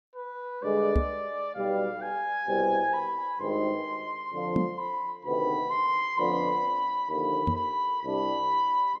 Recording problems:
microphone bump; at 1 s, at 4.5 s and at 7.5 s; peak +6 dB vs average level

